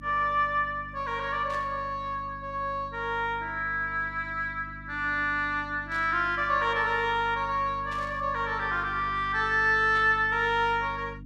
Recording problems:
hum; 50 Hz, harmonics up to 300 Hz, SNR 18 dB
burst of static; 4 times, first at 1.5 s; peak -13 dB vs average level

